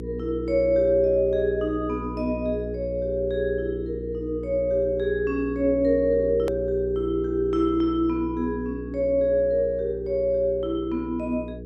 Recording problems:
hum; 60 Hz, harmonics up to 480 Hz, SNR 10 dB
edit click; at 6.5 s

